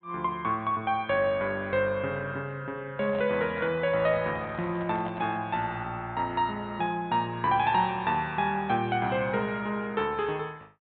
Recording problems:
treble cut off; nothing above 4 kHz
handling noise; from 3 to 5.5 s; peak -7 dB vs average level

